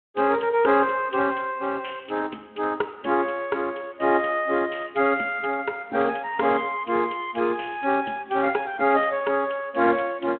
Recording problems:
telephone audio; 240 Hz to 3.3 kHz, Speex

